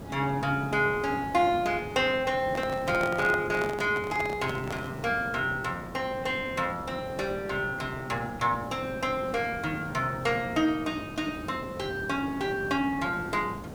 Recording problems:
background hiss; SNR 12 dB
microphone handling noise; from 2.5 to 5 s; peak -3 dB vs average level

